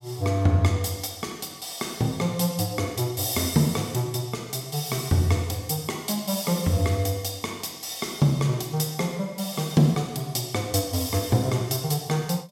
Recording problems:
none

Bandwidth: 16 kHz